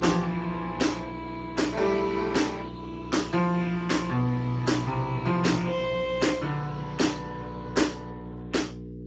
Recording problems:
codec artefacts; Speex, log-spectral distance 4 dB, nothing above 7.3 kHz
hum; 60 Hz, harmonics up to 480 Hz, SNR 12 dB

